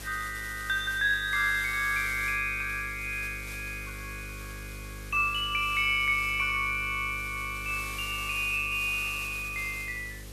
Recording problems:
electrical hum; 50 Hz, harmonics up to 550 Hz, SNR 16 dB
background hiss; slope +1 dB per octave, SNR 15 dB

